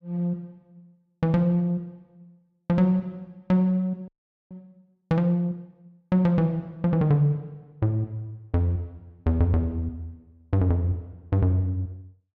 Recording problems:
frozen audio; at 4 s

